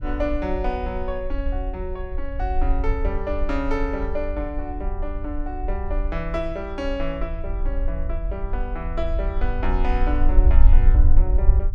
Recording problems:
rumble; below 54 Hz, strongest tone 24 Hz, SNR -4 dB

